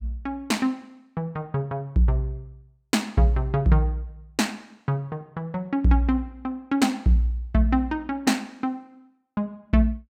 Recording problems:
none

